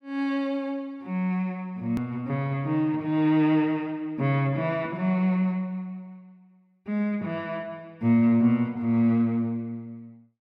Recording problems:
edit click; at 2 s

